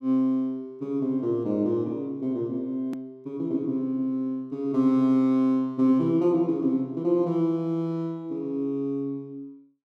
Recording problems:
hard cut with a click; at 3 s

